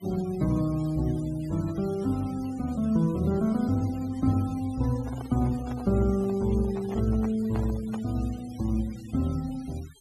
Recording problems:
denoising artefacts; signal-to-artefact ratio 22 dB
handling noise; from 5 to 8 s; peak -7 dB vs average level

